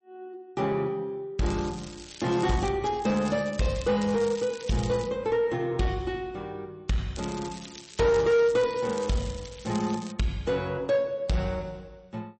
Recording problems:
codec artefacts; MP3, log-spectral distance 5 dB, nothing above 8.2 kHz
distortion; soft clipping, signal-to-distortion ratio 10 dB
crackle; from 1.5 to 2.5 s, from 3 to 5 s and from 7 to 10 s; loose cable, SNR 16 dB

